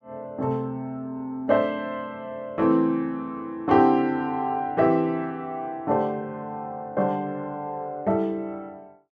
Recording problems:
none

